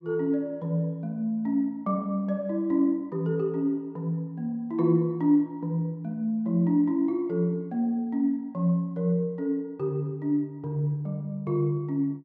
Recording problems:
none

